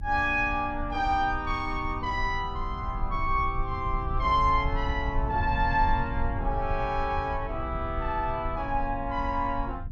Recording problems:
low-frequency rumble; below 78 Hz, SNR 7 dB

